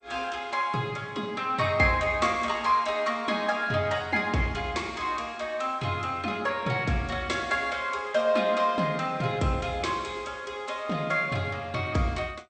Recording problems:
codec artefacts; MP2, log-spectral distance 2 dB, nothing above 8.5 kHz

